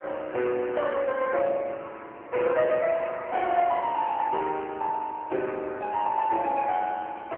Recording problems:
phone line; 300 Hz to 3 kHz, AMR-NB

